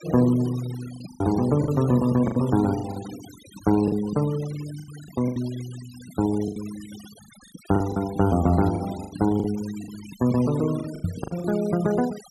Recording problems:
denoising artefacts; signal-to-artefact ratio 19 dB
lost packets; 10% of the sound replaced, filled with the last packet
knock on the microphone; at 11 s; peak +2 dB vs average level

